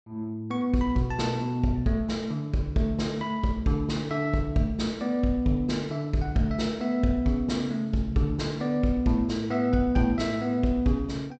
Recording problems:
treble cut off; nothing above 8 kHz

